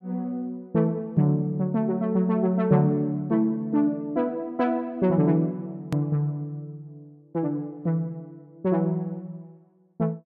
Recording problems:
hard cut with a click; at 6 s

